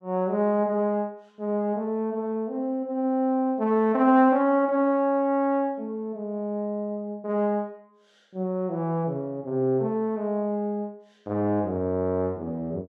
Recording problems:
none

